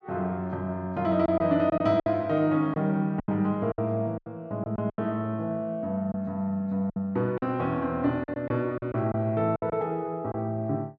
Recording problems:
packet loss; 8% of the sound replaced, filled with silence

